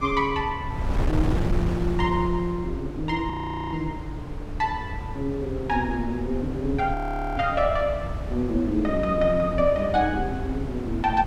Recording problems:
wind on the microphone; below 150 Hz, SNR 6 dB
frozen audio; at 3.5 s and at 7 s

